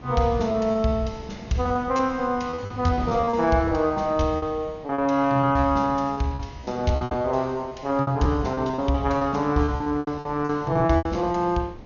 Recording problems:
codec artefacts; MP2, log-spectral distance 2 dB, nothing above 6.7 kHz
wind noise; below 520 Hz, SNR 20 dB
lost packets; 15% of the sound replaced, filled with repeated pitch periods

